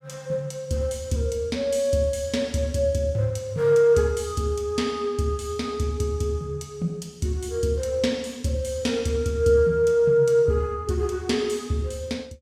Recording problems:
none

